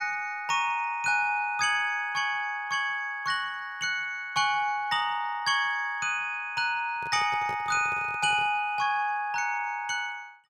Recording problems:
handling noise; from 7 to 8.5 s; peak -10 dB vs average level

